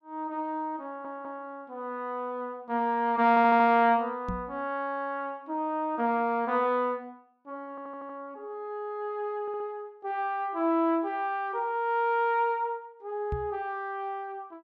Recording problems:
audio stuttering; 4 times, first at 1 s
microphone thump; at 4.5 s and at 13 s; peak -1 dB vs average level

